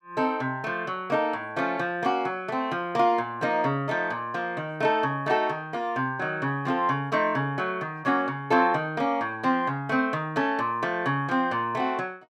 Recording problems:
none

